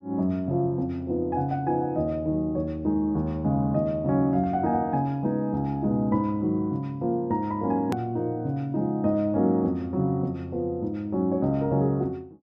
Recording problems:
hard cut with a click; at 8 s

